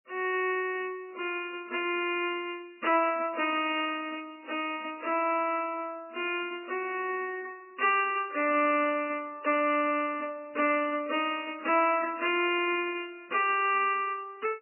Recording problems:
lossy codec; MP3, log-spectral distance 5 dB, nothing above 2.8 kHz

